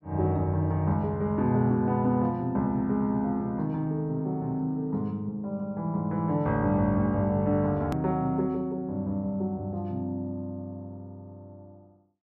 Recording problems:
edit click; at 8 s

